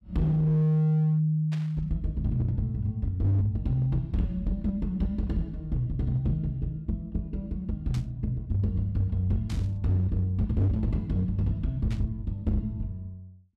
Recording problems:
distorted audio; hard clipping, signal-to-distortion ratio 11 dB
burst of static; 4 times, first at 1.5 s; peak -11 dB vs average level

